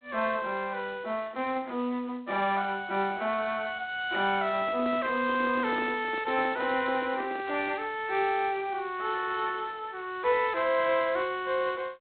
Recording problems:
telephone audio; 220 Hz to 3.6 kHz, G.726
handling noise; from 4.5 to 7.5 s; peak -7 dB vs average level

